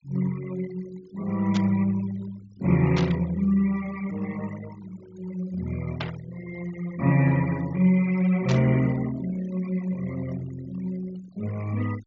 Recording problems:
treble cut off; nothing above 7.4 kHz
noise reduction artefacts; signal-to-artefact ratio 20 dB
burst of static; 4 times, first at 1.5 s; peak -2 dB vs average level

